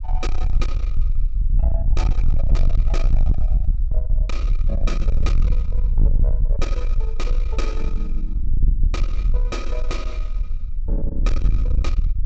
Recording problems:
treble cut off; nothing above 8 kHz
distortion; soft clipping, signal-to-distortion ratio 6 dB
rumble; below 48 Hz, SNR -10 dB

